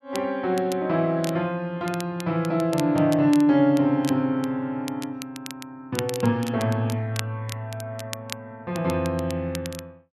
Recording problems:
crackling; vinyl, SNR 16 dB

